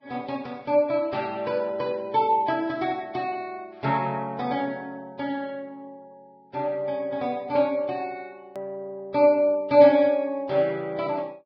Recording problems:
lossy codec; Vorbis, log-spectral distance 2 dB
hard cut with a click; at 8.5 s

